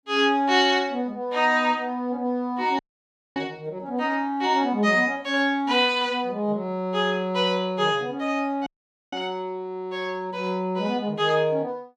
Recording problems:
audio cutting out; at 3 s for 0.5 s and at 8.5 s

